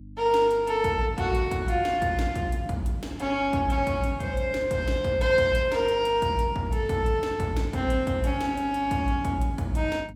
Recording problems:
hum; 50 Hz, harmonics up to 300 Hz, SNR 19 dB

